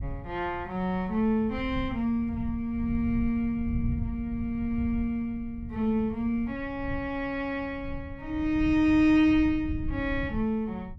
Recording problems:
rumble; below 120 Hz, SNR 11 dB

